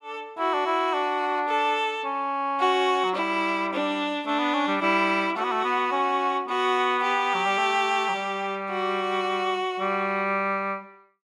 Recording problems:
none

